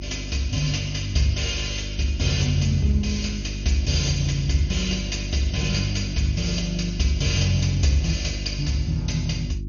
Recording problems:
codec artefacts; MP2, log-spectral distance 5 dB, nothing above 6.7 kHz
electrical hum; 50 Hz, harmonics up to 350 Hz, SNR 8 dB

